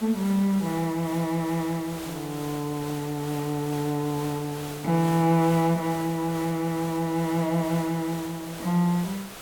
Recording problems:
background hiss; slope -3 dB per octave, SNR 13 dB

